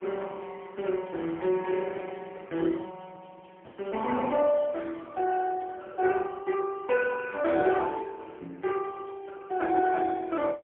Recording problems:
telephone audio; 240 Hz to 3 kHz, AMR-NB, then MP3

